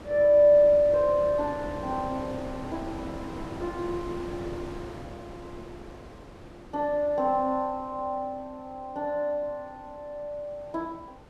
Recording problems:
wind noise; below 720 Hz, SNR 15 dB

